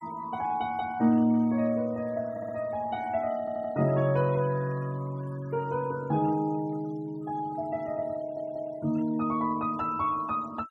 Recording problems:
noise reduction artefacts; signal-to-artefact ratio 23 dB
audio stuttering; at 2.5 s, at 3.5 s and at 8 s

